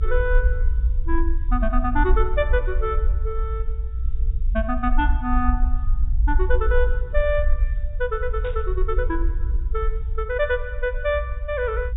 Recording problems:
treble missing; nothing above 4 kHz
background hiss; SNR 42 dB
rumble; below 58 Hz, SNR -1 dB
burst of static; at 8.5 s; peak -12 dB vs average level

